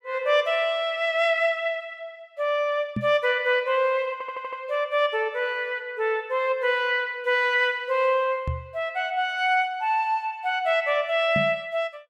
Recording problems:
knock on the microphone; at 3 s, at 8.5 s and at 11 s; peak -1 dB vs average level
stutter; at 4 s

